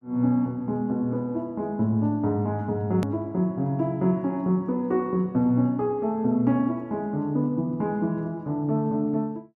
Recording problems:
edit click; at 3 s

